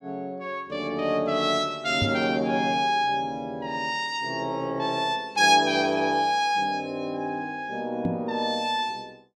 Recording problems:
microphone thump; at 2 s and at 8 s; peak +1 dB vs average level

